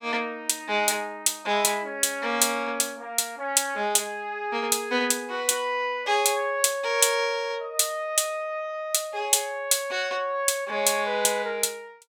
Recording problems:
none

